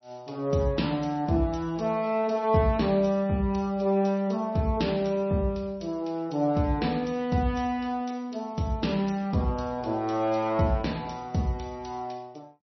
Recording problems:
codec artefacts; MP3, log-spectral distance 3 dB, nothing above 5.8 kHz

